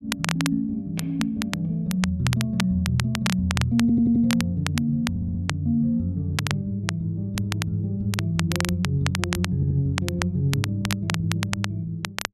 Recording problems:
crackling; vinyl, SNR 7 dB
stutter; at 4 s, at 5 s and at 9.5 s

